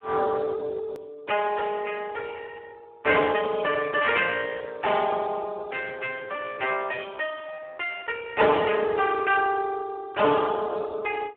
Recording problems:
phone line; 220 Hz to 3.1 kHz, Speex
hard cut with a click; at 1 s

